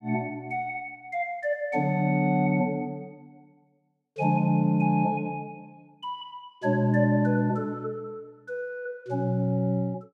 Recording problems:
none

